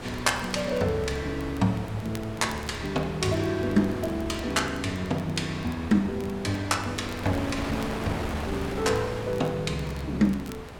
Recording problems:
wind noise; below 1.5 kHz, SNR 10 dB
crackle; vinyl, SNR 23 dB

